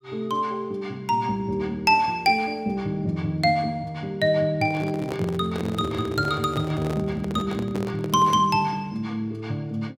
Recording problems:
microphone handling noise; from 4.5 to 8.5 s; peak -4 dB vs average level

